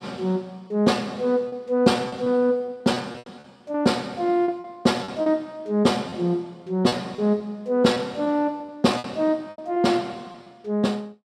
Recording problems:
packet loss; 9% of the sound replaced, filled with repeated pitch periods

